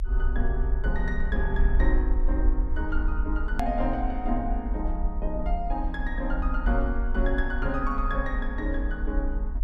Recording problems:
low-frequency rumble; below 48 Hz, strongest tone 28 Hz, SNR -2 dB
hard cut with a click; at 3.5 s

